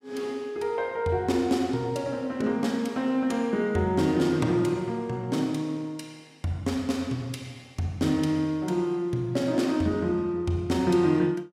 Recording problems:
none

